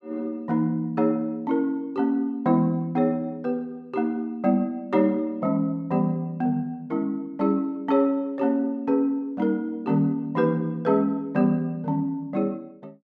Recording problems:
none

